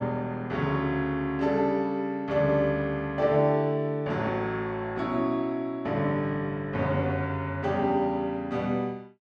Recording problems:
none

